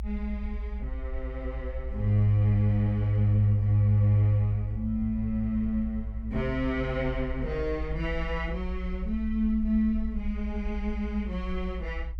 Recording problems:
rumble; below 58 Hz, strongest tone 54 Hz, SNR 9 dB

